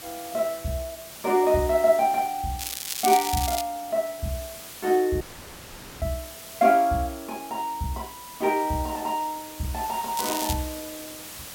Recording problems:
hiss; slope -1 dB per octave, SNR 14 dB
crackle; from 2.5 to 3.5 s and at 10 s; loose cable, SNR 5 dB
audio cutting out; at 5 s for 1 s

